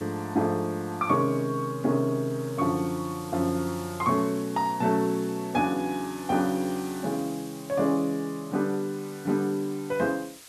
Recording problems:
hiss; slope +1 dB per octave, SNR 18 dB

